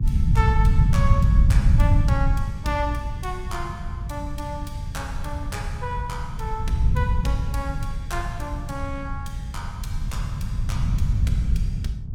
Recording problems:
hum; 60 Hz, harmonics up to 660 Hz, SNR 17 dB
rumble; below 120 Hz, SNR -6 dB

